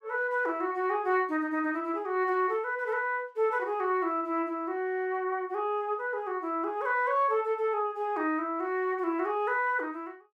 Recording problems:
none

